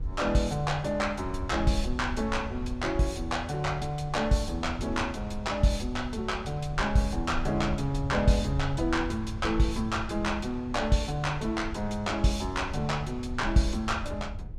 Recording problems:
rumble; below 86 Hz, SNR 10 dB

